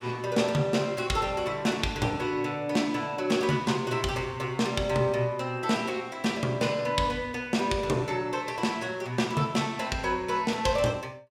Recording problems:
none

